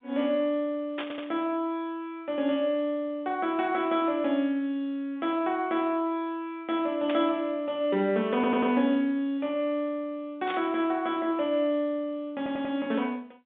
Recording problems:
telephone audio; 150 Hz to 3.7 kHz, G.711
static burst; at 1 s, at 7 s and at 10 s; peak -3 dB vs average level
stutter; at 1 s, at 8.5 s and at 12 s

